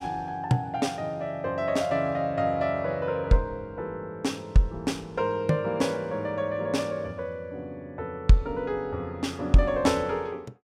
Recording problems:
none

